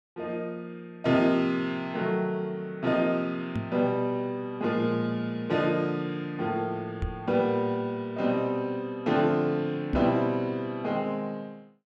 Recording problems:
knock on the microphone; at 3.5 s, at 7 s and at 10 s; peak +2 dB vs average level

